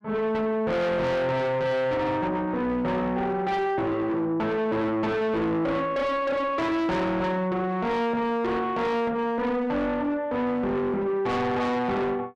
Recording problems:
distortion; soft clipping, signal-to-distortion ratio 7 dB

